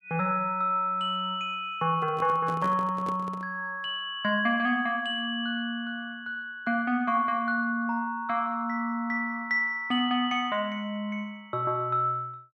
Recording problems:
handling noise; from 2 to 3.5 s; peak -6 dB vs average level

